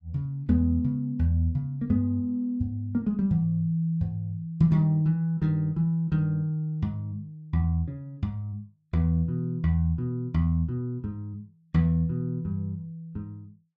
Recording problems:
none

